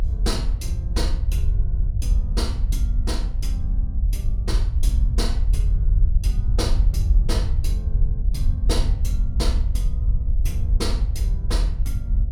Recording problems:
hum; 60 Hz, harmonics up to 720 Hz, SNR 20 dB
low-frequency rumble; below 64 Hz, SNR -9 dB

